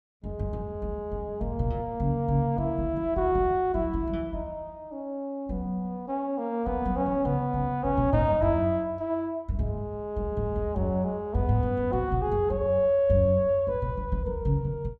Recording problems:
none

